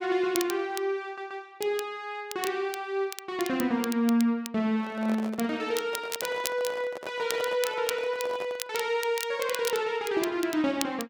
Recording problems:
crackling; vinyl, SNR 10 dB
audio stuttering; at 1 s
handling noise; from 4.5 to 8.5 s; peak -5 dB vs average level

